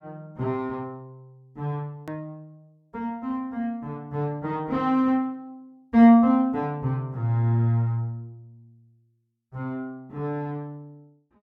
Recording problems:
edit click; at 2 s

